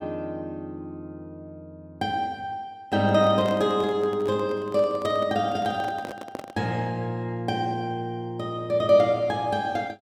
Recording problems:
microphone handling noise; from 3 to 6.5 s; peak -5 dB vs average level

